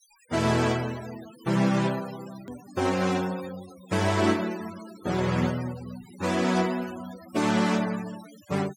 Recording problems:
noise reduction artefacts; signal-to-artefact ratio 15 dB
edit click; at 2.5 s

